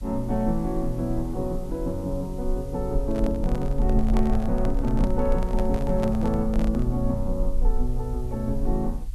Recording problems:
background hiss; slope +1 dB per octave, SNR 27 dB
rumble; below 44 Hz, SNR 4 dB
microphone handling noise; from 3 to 7 s; peak -1 dB vs average level

